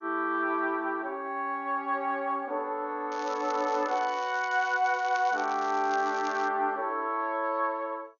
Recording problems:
lossy codec; MP2, log-spectral distance 3 dB
crackle; from 3 to 6.5 s; loose cable, SNR 18 dB

